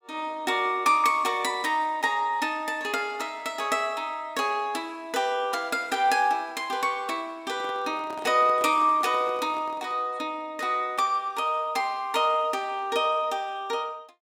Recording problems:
handling noise; from 7.5 to 10 s; peak -11 dB vs average level

